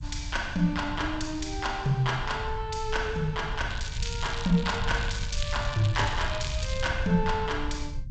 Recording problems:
lossy codec; G.722, log-spectral distance 7 dB, nothing above 7.8 kHz
low-frequency rumble; below 86 Hz, SNR 7 dB
crackle; from 3.5 to 7 s; loose cable, SNR 11 dB

